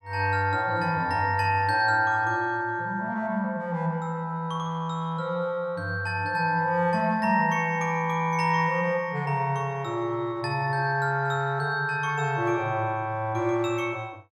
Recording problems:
none

